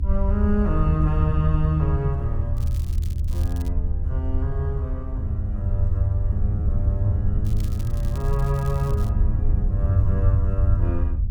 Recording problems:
rumble; below 78 Hz, SNR -1 dB
wind noise; below 110 Hz, SNR 3 dB
crackle; from 2.5 to 3.5 s and from 7.5 to 9 s; loose cable, SNR 20 dB

